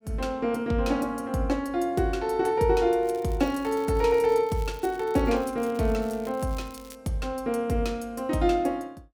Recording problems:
crackle; from 3 to 7 s; loose cable, SNR 24 dB

